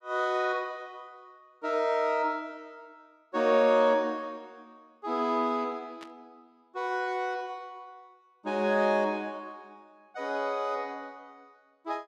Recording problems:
static burst; at 6 s; peak -14 dB vs average level

